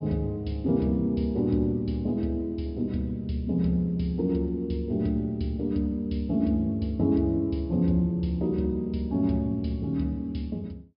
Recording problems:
low-pass filter; nothing above 5.5 kHz

